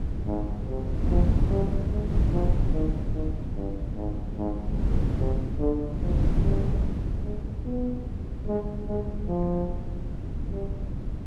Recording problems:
wind noise; below 150 Hz, SNR -4 dB

